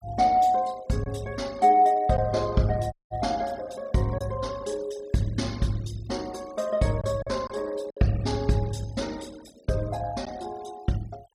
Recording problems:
noise reduction artefacts; signal-to-artefact ratio 23 dB
lost packets; 1.8% of the sound replaced, filled with silence
dropout; at 3 s

